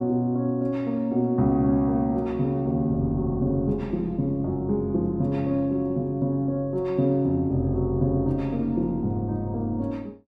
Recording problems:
none

